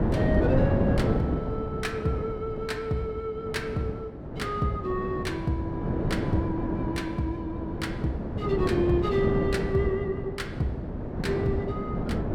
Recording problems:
wind noise; below 400 Hz, SNR 0 dB

